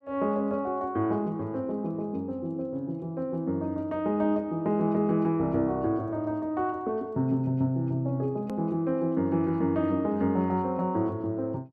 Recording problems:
hard cut with a click; at 8.5 s

